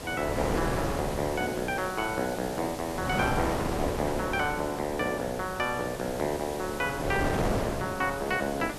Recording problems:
hiss; SNR 11 dB
wind noise; below 790 Hz, SNR 4 dB

